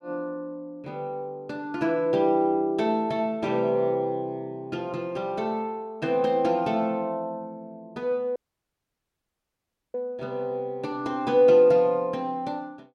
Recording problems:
dropout; at 8.5 s for 1.5 s

